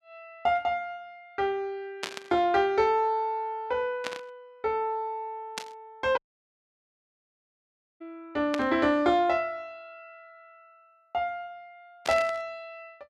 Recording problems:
static burst; 5 times, first at 2 s; peak 0 dB vs average level
audio cutting out; at 6 s for 2 s

